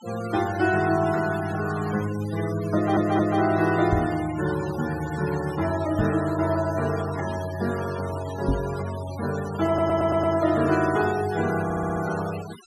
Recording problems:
noise reduction artefacts; signal-to-artefact ratio 14 dB
audio stuttering; at 3 s, at 9.5 s and at 12 s
microphone bump; at 4 s, at 6 s and at 8.5 s; peak +3 dB vs average level

